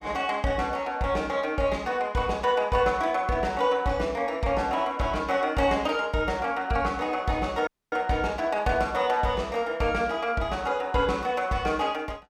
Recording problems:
audio cutting out; at 7.5 s

